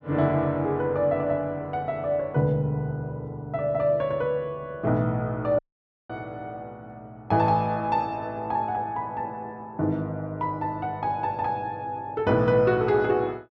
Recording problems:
dropout; at 5.5 s for 0.5 s

